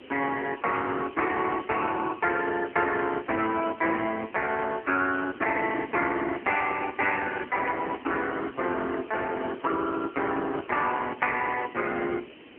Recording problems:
phone line; 240 Hz to 3.3 kHz, AMR-NB
hiss; SNR 23 dB
wind on the microphone; below 510 Hz, SNR 19 dB

